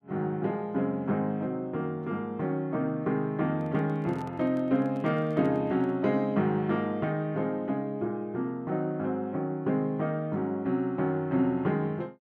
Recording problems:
handling noise; from 3.5 to 6 s; peak -10 dB vs average level

